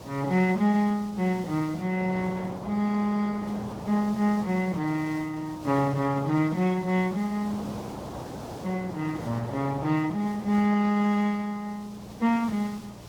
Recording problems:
lossy compression; Speex, log-spectral distance 3 dB
hum; 60 Hz, harmonics up to 420 Hz, SNR 21 dB
background hiss; SNR 23 dB
wind on the microphone; below 860 Hz, SNR 14 dB

